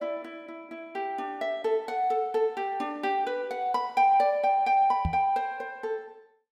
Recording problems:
microphone bump; at 5 s; peak +1 dB vs average level

